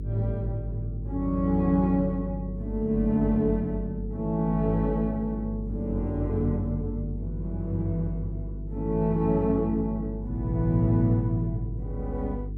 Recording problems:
hum; 50 Hz, harmonics up to 450 Hz, SNR 8 dB

